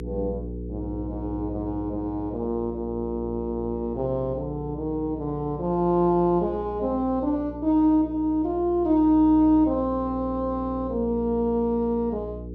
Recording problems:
mains hum; 60 Hz, harmonics up to 480 Hz, SNR 12 dB

